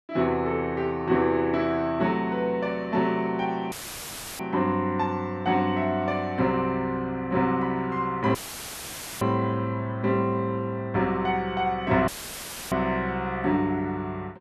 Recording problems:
audio cutting out; at 3.5 s for 0.5 s, at 8.5 s for 1 s and at 12 s for 0.5 s; filled with static

